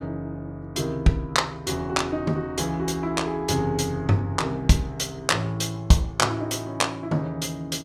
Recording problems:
none

